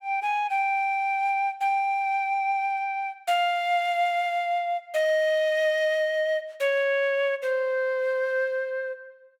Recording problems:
none

